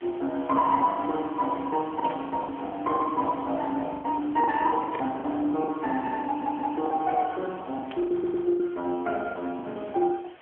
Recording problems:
phone line; 220 Hz to 3.5 kHz, AMR-NB
hiss; SNR 22 dB
lost packets; 11% of the sound replaced, filled with the last packet
burst of static; at 2 s, at 5 s and at 8 s; peak -12 dB vs average level
audio stuttering; at 6.5 s and at 8 s

